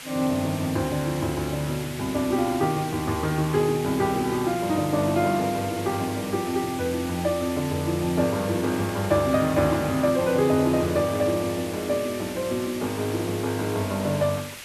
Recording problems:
background hiss; SNR 12 dB

